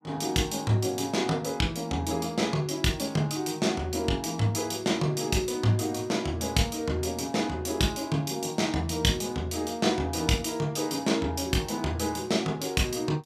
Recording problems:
none

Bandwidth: 14.5 kHz